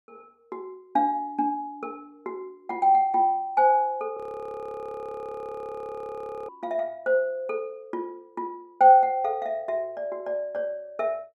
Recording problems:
audio freezing; at 4 s for 2.5 s

